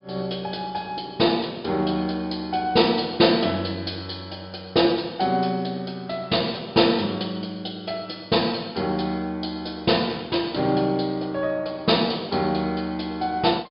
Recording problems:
treble cut off; nothing above 5.5 kHz

